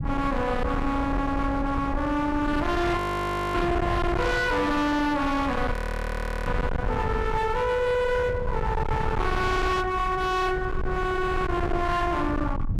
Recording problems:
distortion; hard clipping, uneven, signal-to-distortion ratio 6 dB
low-frequency rumble; below 290 Hz, SNR 5 dB
audio freezing; at 3 s for 0.5 s and at 5.5 s for 0.5 s

